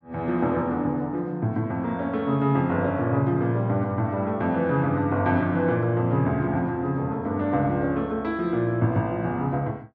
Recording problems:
treble missing; nothing above 8 kHz

